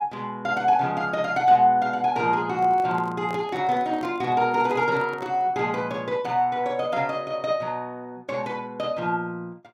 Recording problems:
microphone handling noise; from 2.5 to 5.5 s; peak -10 dB vs average level

